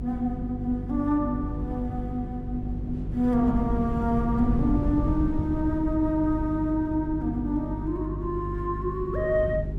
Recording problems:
hum; 50 Hz, harmonics up to 400 Hz, SNR 7 dB
wind on the microphone; below 170 Hz, SNR 7 dB

